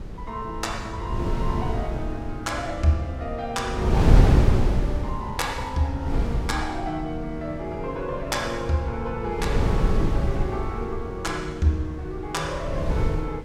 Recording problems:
wind noise; below 160 Hz, SNR -3 dB

